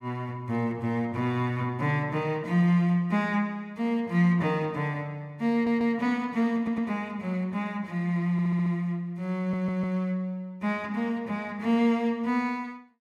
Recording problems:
audio stuttering; 4 times, first at 5.5 s

